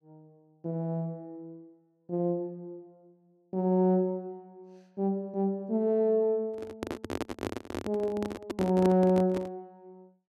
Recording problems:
handling noise; from 6.5 to 9.5 s; peak 0 dB vs average level

